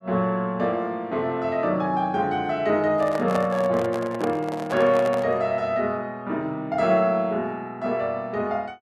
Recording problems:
microphone handling noise; from 3 to 5.5 s; peak -1 dB vs average level

